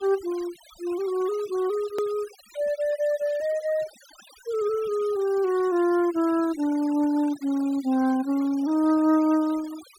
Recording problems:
denoising artefacts; signal-to-artefact ratio 22 dB
hard cut with a click; at 2 s

